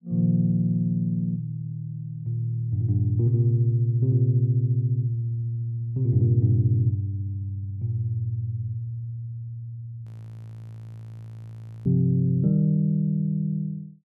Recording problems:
audio freezing; at 10 s for 2 s

